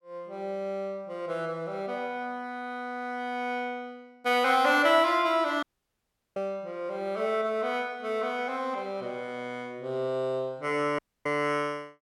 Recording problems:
audio cutting out; at 5.5 s for 0.5 s and at 11 s

